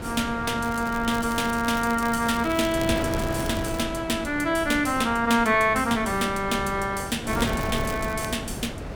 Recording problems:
wind noise; below 630 Hz, SNR 9 dB
crackling; from 0.5 to 4 s and at 7.5 s; loose cable, SNR 16 dB

